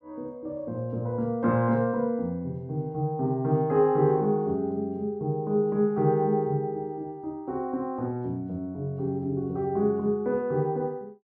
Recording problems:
none

